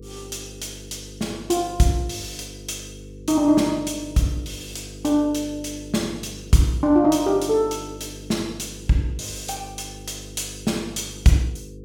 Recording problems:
electrical hum; 50 Hz, harmonics up to 500 Hz, SNR 17 dB

